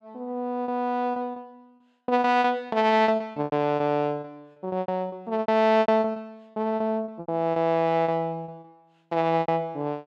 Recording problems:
lost packets; 16% of the sound replaced, filled with repeated pitch periods

